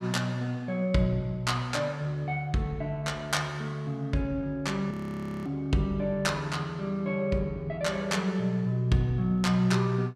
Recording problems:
audio freezing; at 5 s for 0.5 s

